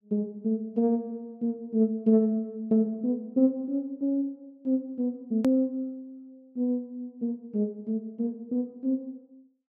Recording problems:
click at an edit; at 5.5 s

